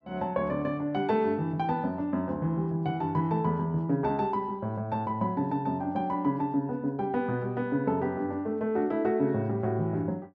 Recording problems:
none

